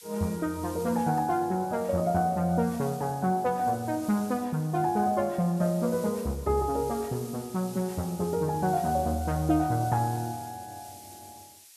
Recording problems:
hiss; slope +4 dB per octave, SNR 18 dB

